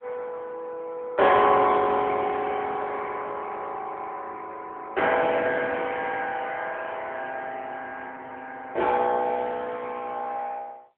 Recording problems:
telephone audio; 300 Hz to 3.4 kHz, AMR-NB

